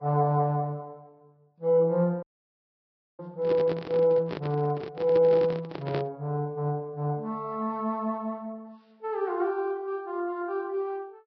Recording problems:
lossy codec; Vorbis, log-spectral distance 2 dB, nothing above 10.7 kHz
audio freezing; at 2 s for 1 s
microphone handling noise; from 3.5 to 6 s; peak -1 dB vs average level

